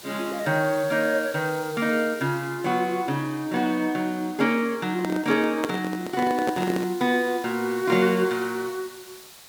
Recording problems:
background hiss; slope 0 dB per octave, SNR 18 dB
handling noise; from 5 to 7 s; peak +1 dB vs average level

